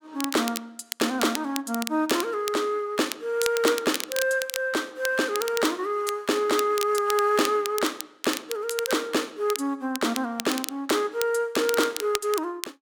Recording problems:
crackling; vinyl, SNR 8 dB

